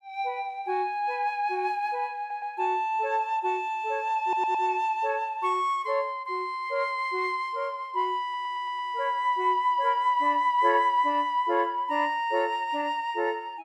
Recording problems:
stutter; at 2 s, at 4 s and at 8 s

